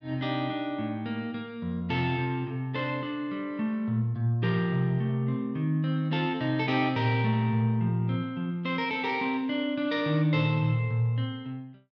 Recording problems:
none

